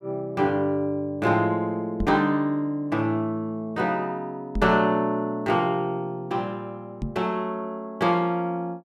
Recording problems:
microphone bump; at 2 s, at 4.5 s and at 7 s; peak 0 dB vs average level

